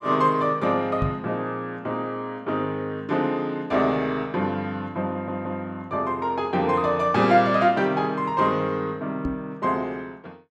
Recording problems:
microphone bump; at 1 s and at 9.5 s; peak +2 dB vs average level
stutter; at 5 s

